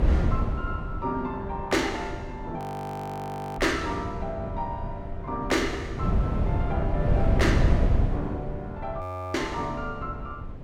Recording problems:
wind noise; below 160 Hz, SNR -1 dB
frozen audio; at 2.5 s for 1 s and at 9 s

